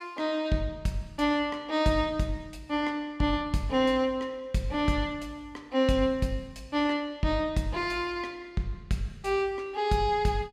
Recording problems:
none

